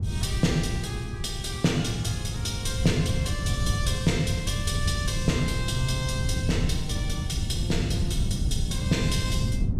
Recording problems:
wind on the microphone; below 130 Hz, SNR 1 dB

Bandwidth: 14.5 kHz